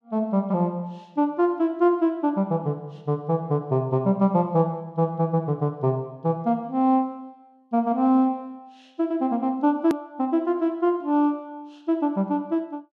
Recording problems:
hard cut with a click; at 10 s

